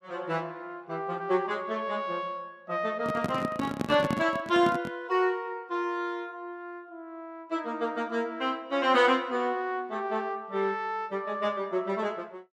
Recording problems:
handling noise; from 3 to 5 s; peak +3 dB vs average level

